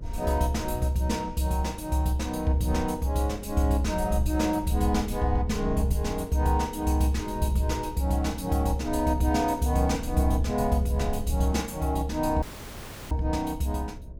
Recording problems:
hum; 60 Hz, harmonics up to 660 Hz, SNR 23 dB
rumble; below 84 Hz, SNR 12 dB
audio cutting out; at 12 s for 0.5 s

